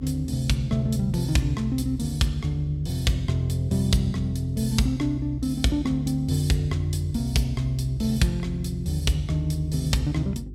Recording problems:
hum; 50 Hz, harmonics up to 400 Hz, SNR 15 dB

